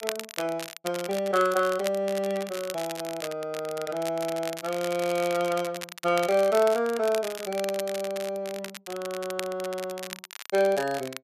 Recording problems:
crackle; vinyl, SNR 11 dB

